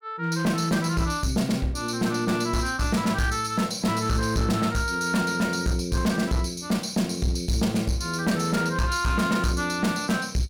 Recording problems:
distorted audio; hard clipping, uneven, signal-to-distortion ratio 10 dB

